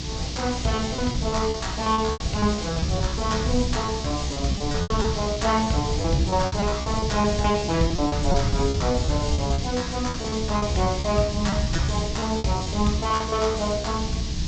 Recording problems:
low-pass filter; nothing above 8 kHz
mains hum; 60 Hz, harmonics up to 360 Hz, SNR 8 dB
hiss; SNR 8 dB
low-frequency rumble; below 140 Hz, SNR 6 dB
lost packets; 14% of the sound replaced, filled with repeated pitch periods

